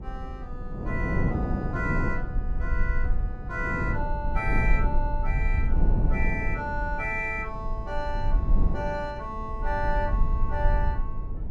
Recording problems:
low-frequency rumble; below 52 Hz, strongest tone 20 Hz, SNR -1 dB
wind on the microphone; below 270 Hz, SNR 2 dB

